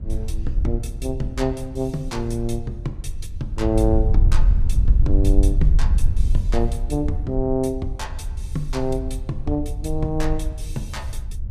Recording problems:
wind on the microphone; below 62 Hz, SNR -2 dB

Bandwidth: 14.5 kHz